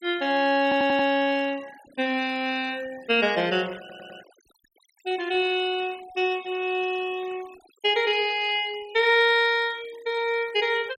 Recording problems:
noise reduction artefacts; signal-to-artefact ratio 22 dB
audio stuttering; at 0.5 s and at 4 s

